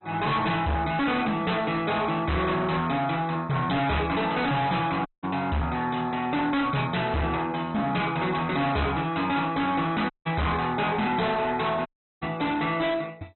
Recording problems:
low-pass filter; nothing above 4 kHz
lossy compression; MP2, log-spectral distance 4 dB
distorted audio; hard clipping, signal-to-distortion ratio 6 dB
dropout; at 5 s, at 10 s and at 12 s

